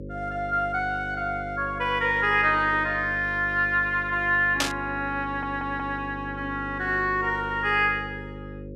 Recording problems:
electrical hum; 50 Hz, harmonics up to 550 Hz, SNR 13 dB
burst of static; at 4.5 s; peak +5 dB vs average level
stutter; at 5 s

